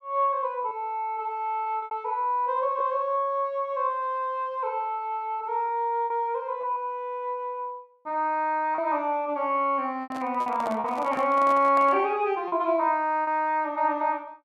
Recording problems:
lost packets; 4% of the sound replaced, filled with repeated pitch periods
handling noise; from 10 to 12 s; peak -5 dB vs average level

